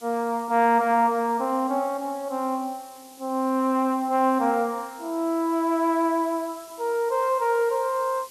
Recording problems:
hiss; SNR 22 dB

